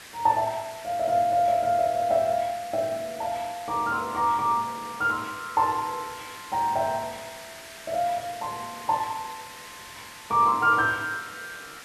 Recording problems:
hiss; SNR 16 dB

